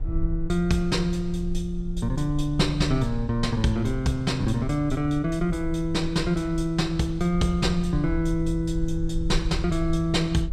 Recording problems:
rumble; below 60 Hz, SNR 9 dB

